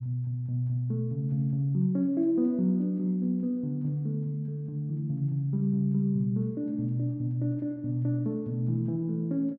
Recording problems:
none

